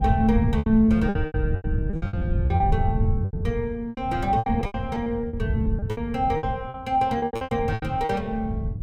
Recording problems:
wind on the microphone; below 120 Hz, SNR 2 dB
packet loss; 18% of the sound replaced, filled with repeated pitch periods

